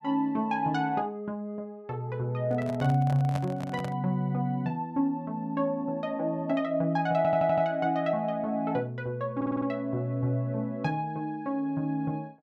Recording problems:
handling noise; from 2.5 to 4 s; peak -3 dB vs average level
audio stuttering; at 7 s and at 9.5 s

